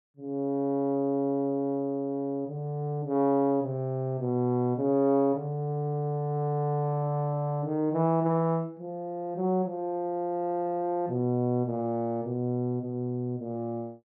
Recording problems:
treble cut off; nothing above 6.1 kHz

